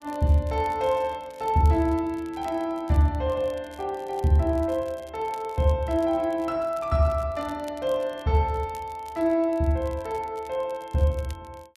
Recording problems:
crackling; vinyl, SNR 27 dB

